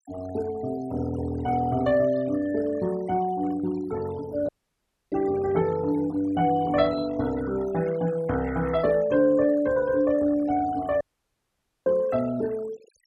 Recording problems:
denoising artefacts; signal-to-artefact ratio 20 dB
dropout; at 4.5 s for 0.5 s and at 11 s for 1 s

